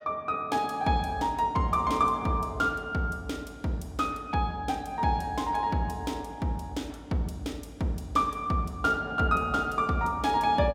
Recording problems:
none

